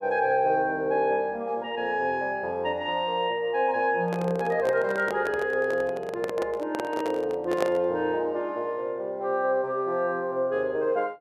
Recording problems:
microphone handling noise; from 4 to 8 s; peak +2 dB vs average level

